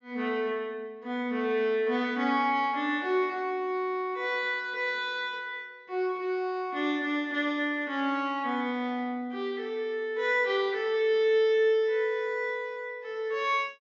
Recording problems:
low-pass filter; nothing above 6.9 kHz

